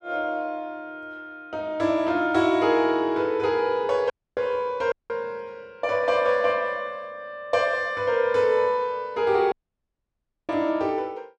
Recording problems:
dropout; at 4 s, at 5 s and at 9.5 s for 1 s

